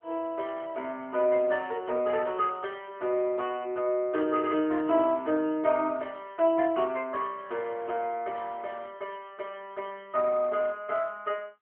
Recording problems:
phone line; 220 Hz to 3.1 kHz, AMR-NB

